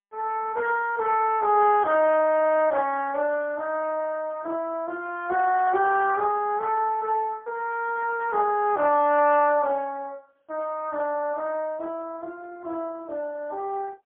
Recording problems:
phone line; 300 Hz to 3.2 kHz, AMR-NB, then MP3

